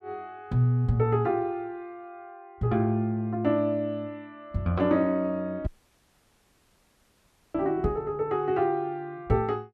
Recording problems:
audio cutting out; at 5.5 s for 2 s

